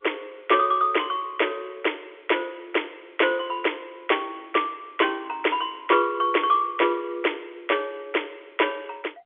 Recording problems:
phone line; 320 Hz to 3.5 kHz, G.711

